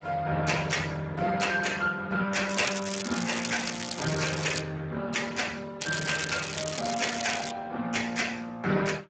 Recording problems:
lossy codec; Speex, log-spectral distance 9 dB, nothing above 7.6 kHz
crackle; from 2.5 to 4.5 s and from 6 to 7.5 s; loose cable, SNR 5 dB

